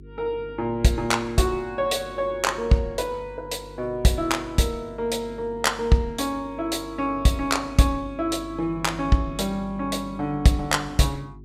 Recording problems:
electrical hum; 50 Hz, harmonics up to 400 Hz, SNR 19 dB

